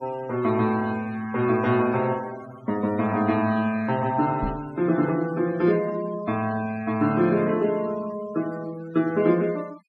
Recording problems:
denoising artefacts; signal-to-artefact ratio 20 dB
microphone bump; at 4.5 s; peak -2 dB vs average level

